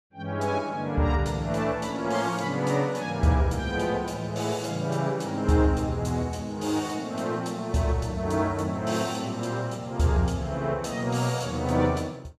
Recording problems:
none

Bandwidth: 14.5 kHz